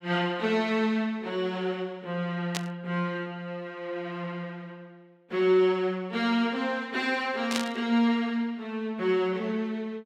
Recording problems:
burst of static; at 2.5 s and at 7.5 s; peak +2 dB vs average level

